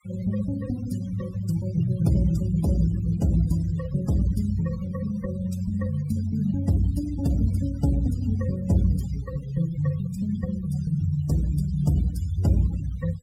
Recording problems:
denoising artefacts; signal-to-artefact ratio 17 dB

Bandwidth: 16 kHz